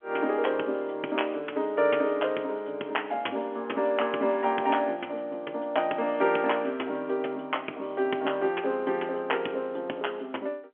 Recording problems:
phone line; 260 Hz to 3.3 kHz, G.711

